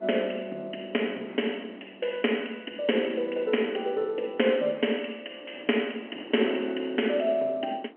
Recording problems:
telephone audio; 260 Hz to 3.1 kHz, G.711
wind noise; below 610 Hz, SNR 20 dB

